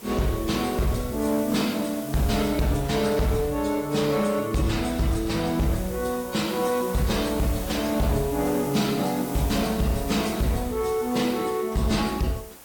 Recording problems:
lossy compression; MP3, then AAC, log-spectral distance 3 dB
distorted audio; hard clipping, signal-to-distortion ratio 12 dB
hiss; slope -3 dB per octave, SNR 14 dB

